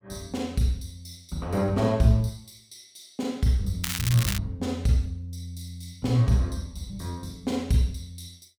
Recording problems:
crackle; at 4 s; loose cable, SNR 4 dB

